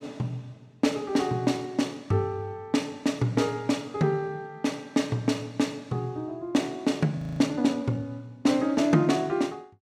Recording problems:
audio freezing; at 7 s

